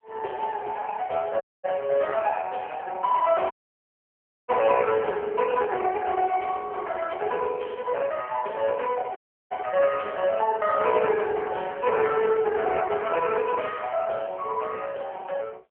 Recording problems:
phone line; 340 Hz to 2.2 kHz, AMR-NB
audio cutting out; at 1.5 s, at 3.5 s for 1 s and at 9 s

